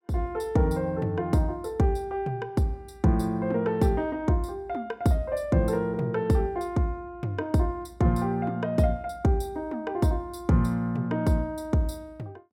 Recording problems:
none

